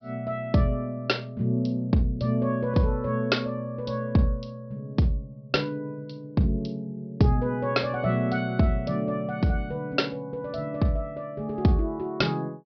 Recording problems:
low-pass filter; nothing above 5.5 kHz

